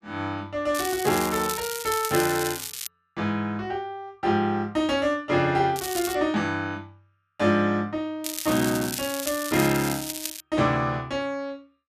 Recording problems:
crackle; from 0.5 to 3 s, at 6 s and from 8 to 10 s; loose cable, SNR 6 dB

